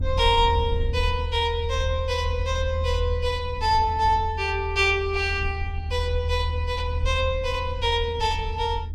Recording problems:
low-frequency rumble; below 82 Hz, strongest tone 80 Hz, SNR 4 dB

